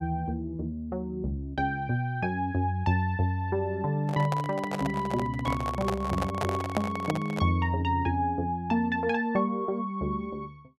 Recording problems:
microphone handling noise; from 4 to 7.5 s; peak +3 dB vs average level

